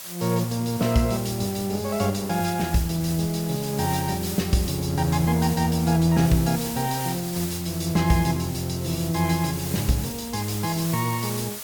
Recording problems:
lossy compression; Opus, log-spectral distance 4 dB, nothing above 18.9 kHz
hiss; slope +1 dB per octave, SNR 10 dB

